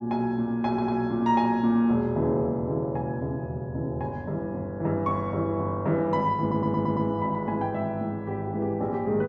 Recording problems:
stutter; at 0.5 s and at 6.5 s

